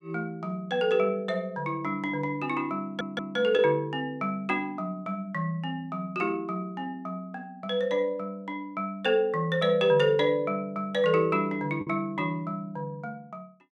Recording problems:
packet loss; 0.5% of the sound replaced, filled with the last packet
audio stuttering; at 3 s

